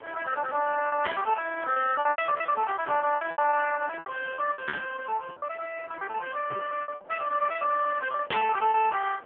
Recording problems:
telephone audio; 390 Hz to 2.2 kHz, AMR-NB
wind noise; below 780 Hz, SNR 19 dB
lost packets; 17% of the sound replaced, filled with repeated pitch periods

